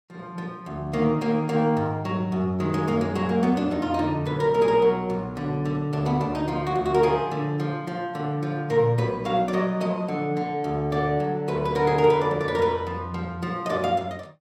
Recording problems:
none

